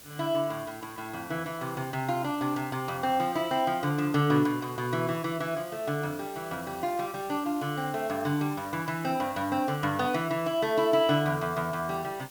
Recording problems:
background hiss; SNR 18 dB

